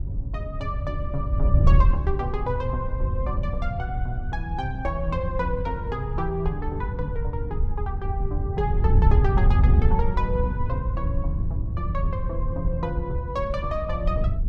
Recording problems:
wind on the microphone; below 88 Hz, SNR -4 dB

